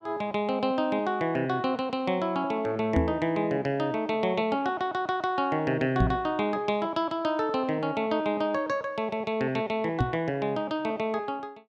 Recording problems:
microphone bump; at 3 s, at 6 s and at 10 s; peak +6 dB vs average level

